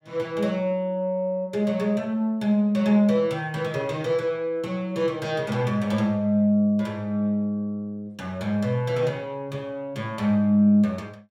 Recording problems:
none

